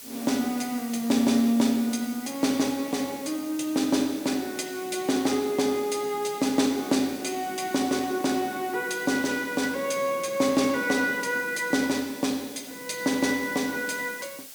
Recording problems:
background hiss; slope +1 dB per octave, SNR 16 dB

